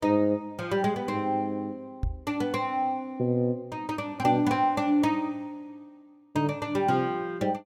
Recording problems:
microphone thump; at 2 s; peak +1 dB vs average level

